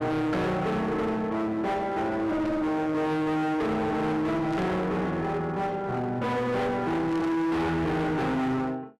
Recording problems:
distorted audio; hard clipping, uneven, signal-to-distortion ratio 6 dB
static burst; at 2.5 s, at 4.5 s and at 7 s; peak -14 dB vs average level

